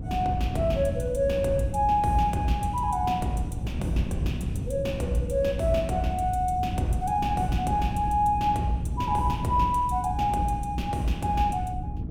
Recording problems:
electrical hum; 60 Hz, harmonics up to 300 Hz, SNR 11 dB
wind noise; below 160 Hz, SNR 8 dB

